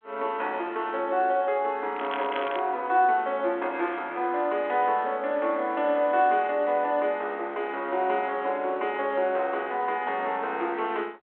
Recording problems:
phone line; 260 Hz to 3.6 kHz, G.726
crackle; at 2 s; loose cable, SNR 15 dB

